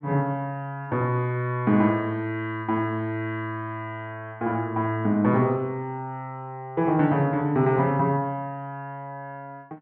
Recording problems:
none

